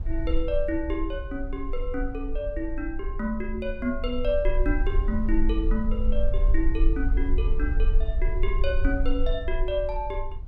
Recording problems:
low-frequency rumble; below 46 Hz, strongest tone 20 Hz, SNR -1 dB

